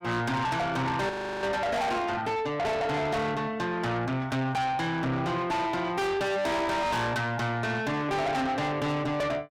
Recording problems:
distortion; soft clipping, signal-to-distortion ratio 6 dB
frozen audio; at 1 s

